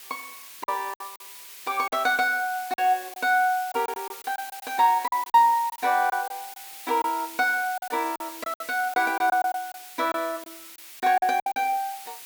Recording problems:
hiss; SNR 15 dB
packet loss; 10% of the sound replaced, filled with silence

